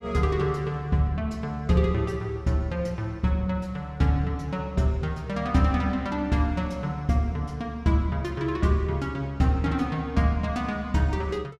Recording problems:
none

